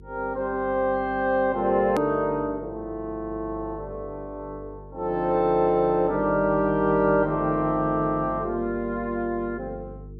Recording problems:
mains hum; 50 Hz, harmonics up to 450 Hz, SNR 19 dB
click at an edit; at 2 s

